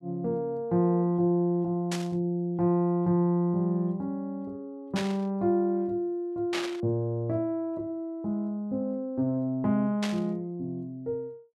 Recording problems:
burst of static; 4 times, first at 2 s; peak 0 dB vs average level

